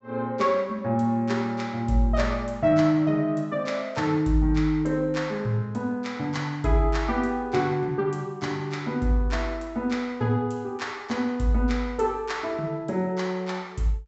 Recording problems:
treble missing; nothing above 7.8 kHz

